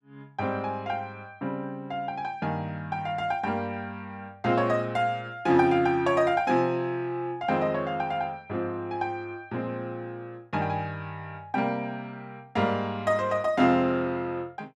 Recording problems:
none

